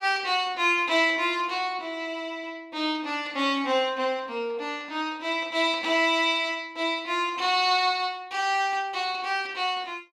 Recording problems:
none

